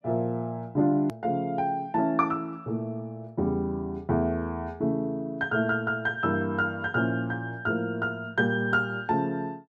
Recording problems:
hard cut with a click; at 1 s

